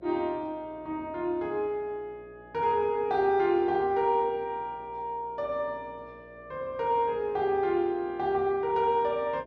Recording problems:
hum; 60 Hz, harmonics up to 660 Hz, SNR 25 dB

